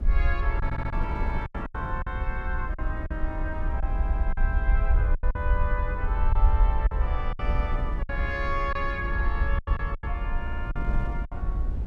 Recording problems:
hum; 60 Hz, harmonics up to 300 Hz, SNR 12 dB
low-frequency rumble; below 60 Hz, SNR -4 dB
wind noise; below 200 Hz, SNR 4 dB
lost packets; 9% of the sound replaced, filled with silence
audio stuttering; at 0.5 s, at 4 s and at 10 s

